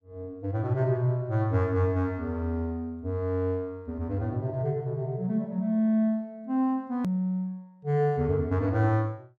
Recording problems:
hard cut with a click; at 7 s

